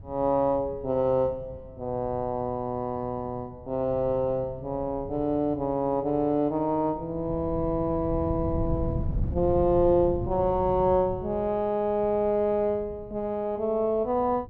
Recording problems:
wind noise; below 140 Hz, SNR 12 dB

